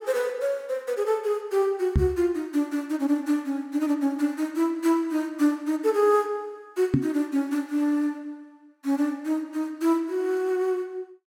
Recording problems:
knock on the microphone; at 2 s and at 7 s; peak +7 dB vs average level

